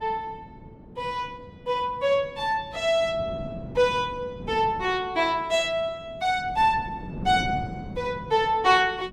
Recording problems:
wind noise; below 290 Hz, SNR 15 dB

